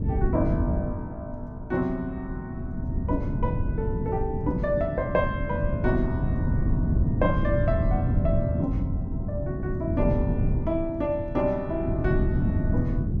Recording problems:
wind on the microphone; below 170 Hz, SNR -2 dB

